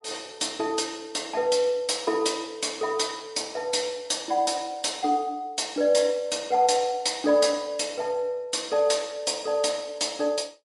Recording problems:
codec artefacts; MP3, log-spectral distance 4 dB, nothing above 11 kHz

